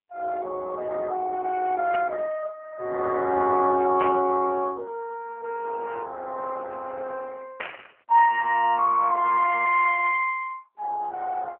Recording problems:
phone line; 300 Hz to 3.1 kHz, AMR-NB
burst of static; at 2 s, at 4 s and at 7.5 s; peak -4 dB vs average level

